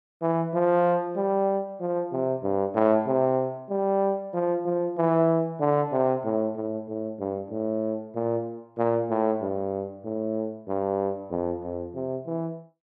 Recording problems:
none

